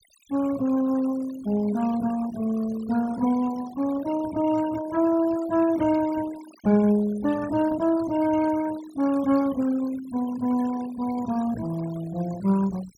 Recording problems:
noise reduction artefacts; signal-to-artefact ratio 17 dB

